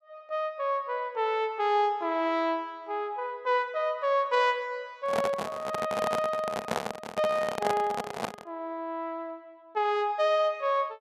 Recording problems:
microphone handling noise; from 5 to 8.5 s; peak +3 dB vs average level

